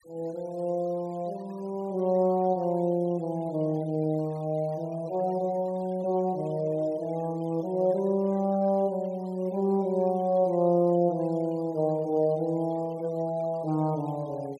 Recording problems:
denoising artefacts; signal-to-artefact ratio 28 dB

